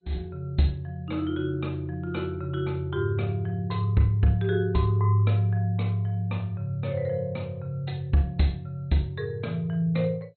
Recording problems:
lossy compression; MP2, log-spectral distance 2 dB, nothing above 4.2 kHz

